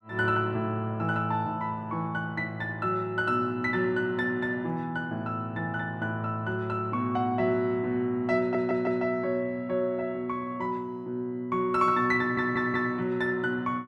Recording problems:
stutter; at 8.5 s and at 12 s

